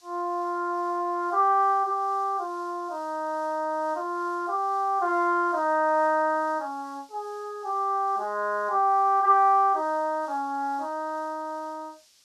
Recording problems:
hiss; SNR 29 dB

